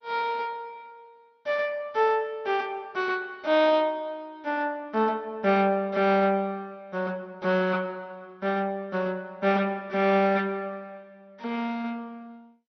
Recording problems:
lossy compression; MP2, log-spectral distance 2 dB, nothing above 5.7 kHz

